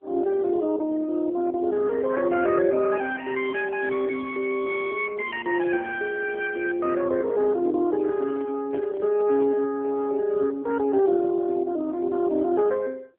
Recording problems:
phone line; 240 Hz to 2.8 kHz, AMR-NB
handling noise; from 8 to 9.5 s; peak -8 dB vs average level

